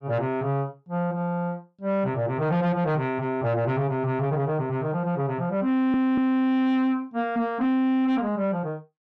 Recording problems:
distorted audio; soft clipping, signal-to-distortion ratio 12 dB
stutter; at 5.5 s

